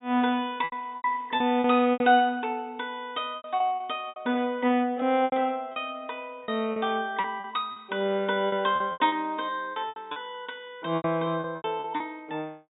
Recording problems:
treble cut off; nothing above 4 kHz
lost packets; 12% of the sound replaced, filled with repeated pitch periods

